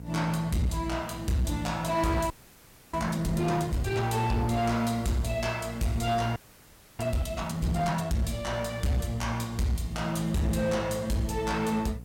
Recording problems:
distorted audio; hard clipping, signal-to-distortion ratio 12 dB
mains hum; 60 Hz, harmonics up to 720 Hz, SNR 15 dB
background hiss; SNR 28 dB
audio freezing; at 2.5 s for 0.5 s and at 6.5 s for 0.5 s

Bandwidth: 16.5 kHz